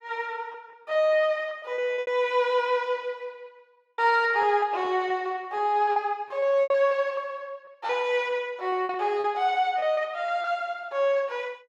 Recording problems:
lost packets; 9% of the sound replaced, filled with repeated pitch periods

